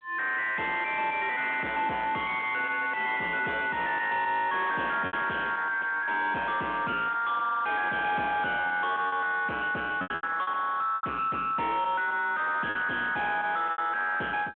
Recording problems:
phone line; 220 Hz to 3.8 kHz, G.726
distorted audio; soft clipping, signal-to-distortion ratio 7 dB
lost packets; 4% of the sound replaced, filled with repeated pitch periods

